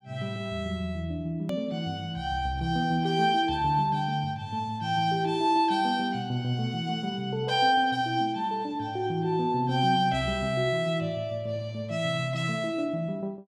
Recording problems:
click at an edit; at 1.5 s

